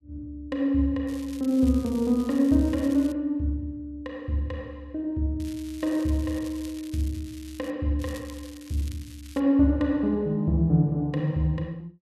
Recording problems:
crackling; from 1 to 3 s, from 5.5 to 7.5 s and from 8 to 9.5 s; loose cable, SNR 21 dB

